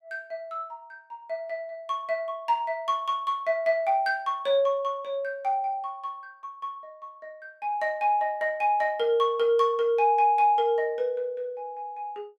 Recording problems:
none

